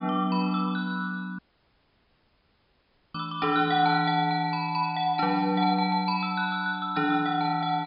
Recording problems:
low-pass filter; nothing above 5.5 kHz
audio cutting out; at 1.5 s for 2 s

